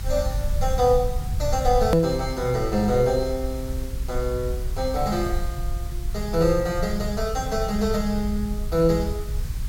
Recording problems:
background hiss; SNR 19 dB
low-frequency rumble; below 72 Hz, SNR 6 dB
hard cut with a click; at 2 s

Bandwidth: 16.5 kHz